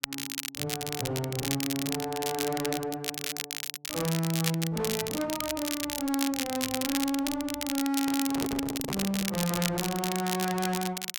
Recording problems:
distorted audio; hard clipping, uneven, signal-to-distortion ratio 6 dB
crackle; vinyl, SNR 2 dB
microphone handling noise; from 8 to 9.5 s; peak +1 dB vs average level

